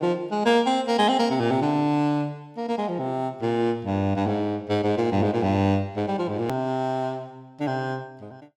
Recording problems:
click at an edit; at 6.5 s

